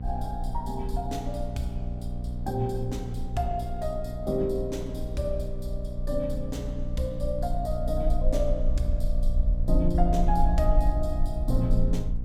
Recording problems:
hum; 60 Hz, harmonics up to 540 Hz, SNR 5 dB
rumble; below 46 Hz, strongest tone 22 Hz, SNR 1 dB

